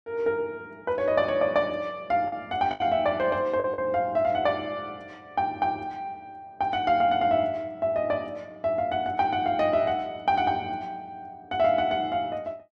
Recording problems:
packet loss; 1.6% of the sound replaced, filled with the last packet

